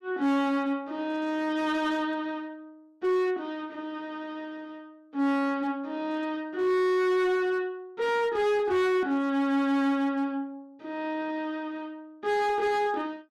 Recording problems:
distortion; hard clipping, signal-to-distortion ratio 11 dB

